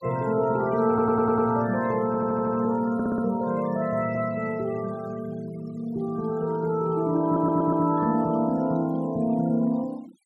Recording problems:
noise reduction artefacts; signal-to-artefact ratio 22 dB
audio stuttering; 4 times, first at 1 s

